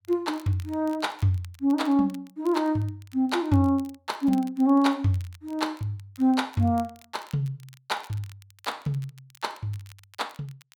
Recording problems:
crackling; vinyl, SNR 27 dB

